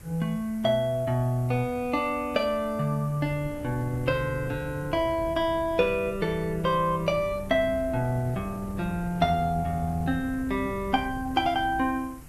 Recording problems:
background hiss; SNR 25 dB
wind on the microphone; below 170 Hz, SNR 15 dB

